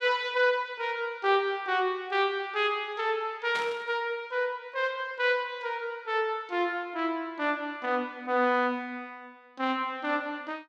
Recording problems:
static burst; at 3.5 s; peak -4 dB vs average level

